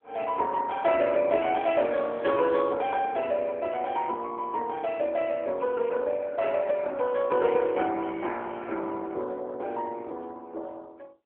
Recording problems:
phone line; 260 Hz to 3.8 kHz, AMR-NB

